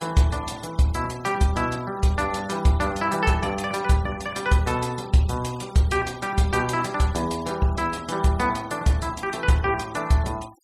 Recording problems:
noise reduction artefacts; signal-to-artefact ratio 22 dB

